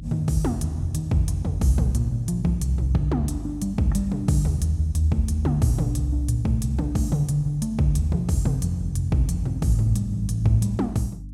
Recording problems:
hum; 50 Hz, harmonics up to 300 Hz, SNR 12 dB

